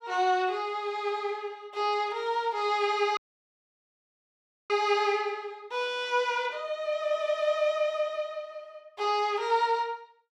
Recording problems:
audio cutting out; at 3 s for 1.5 s

